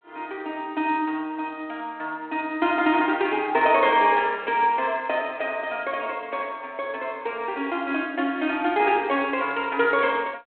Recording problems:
telephone audio; 240 Hz to 3.6 kHz, G.726

